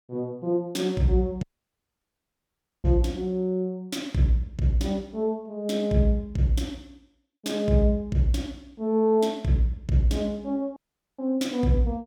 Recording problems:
dropout; at 1.5 s for 1.5 s and at 11 s

